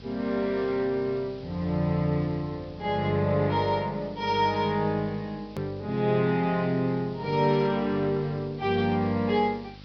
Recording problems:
treble missing; nothing above 5.5 kHz
electrical hum; 50 Hz, harmonics up to 850 Hz, SNR 20 dB
background hiss; SNR 25 dB
hard cut with a click; at 5.5 s

